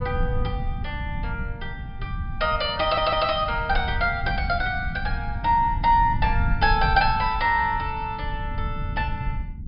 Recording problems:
treble cut off; nothing above 5.5 kHz
low-frequency rumble; below 100 Hz, SNR 7 dB
stutter; at 3 s

